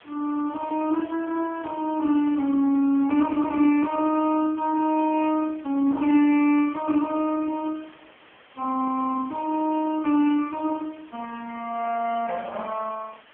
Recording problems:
telephone audio; 220 Hz to 3.4 kHz, AMR-NB
hiss; SNR 27 dB

